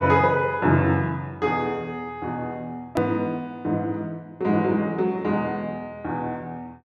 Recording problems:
hard cut with a click; at 3 s

